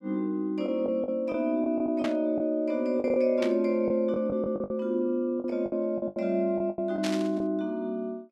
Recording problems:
lost packets; 10% of the sound replaced, filled with the last packet
static burst; at 2 s, at 3.5 s and at 7 s; peak -3 dB vs average level

